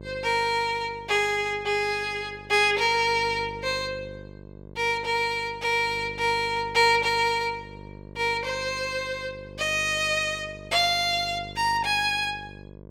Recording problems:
hum; 50 Hz, harmonics up to 1.1 kHz, SNR 19 dB

